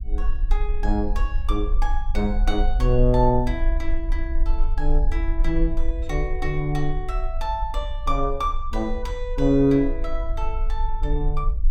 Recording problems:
low-frequency rumble; below 44 Hz, strongest tone 22 Hz, SNR 2 dB

